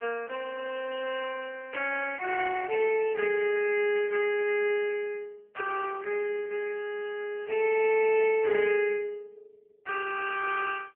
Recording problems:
phone line; 300 Hz to 2.9 kHz, AMR-NB

